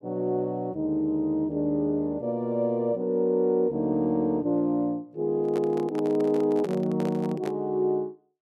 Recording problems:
handling noise; from 5.5 to 7.5 s; peak -6 dB vs average level

